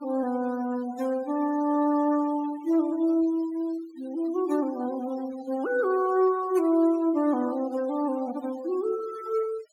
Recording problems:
noise reduction artefacts; signal-to-artefact ratio 20 dB

